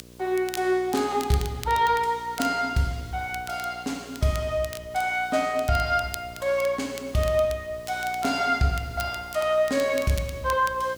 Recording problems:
hum; 60 Hz, harmonics up to 1.1 kHz, SNR 23 dB
background hiss; slope +1 dB per octave, SNR 27 dB
crackling; vinyl, SNR 16 dB

